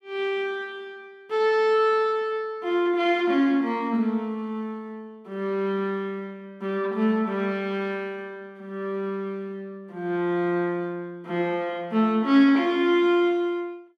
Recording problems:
none

